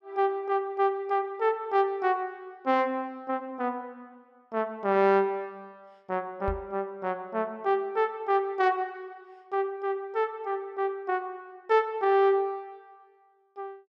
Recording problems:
microphone thump; at 6.5 s; peak -2 dB vs average level

